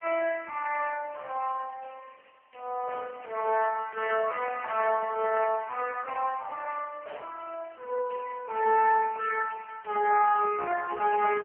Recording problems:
telephone audio; 370 Hz to 2.7 kHz, AMR-NB

